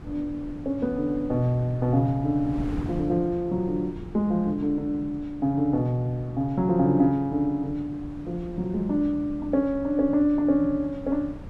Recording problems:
wind on the microphone; below 250 Hz, SNR 15 dB

